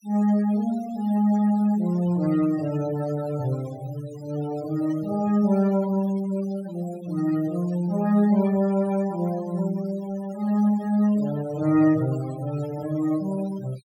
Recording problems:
noise reduction artefacts; signal-to-artefact ratio 20 dB

